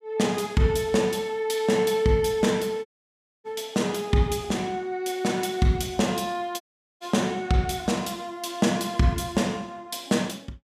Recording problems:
dropout; at 3 s for 0.5 s and at 6.5 s

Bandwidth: 15.5 kHz